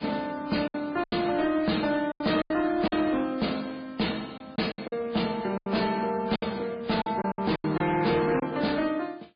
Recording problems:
lossy compression; MP3, then MP3, log-spectral distance 4 dB, nothing above 4.8 kHz
distorted audio; hard clipping, signal-to-distortion ratio 11 dB
packet loss; 9% of the sound replaced, filled with silence

